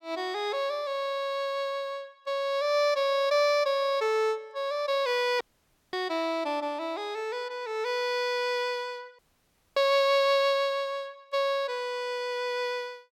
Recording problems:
dropout; at 5.5 s for 0.5 s and at 9 s for 0.5 s

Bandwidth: 17 kHz